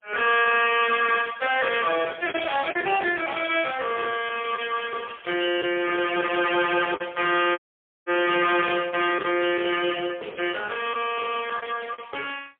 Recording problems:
phone line; 300 Hz to 3.3 kHz, AMR-NB, then MP3
distorted audio; hard clipping, uneven, signal-to-distortion ratio 11 dB
packet loss; 3% of the sound replaced, filled with the last packet
audio cutting out; at 7.5 s

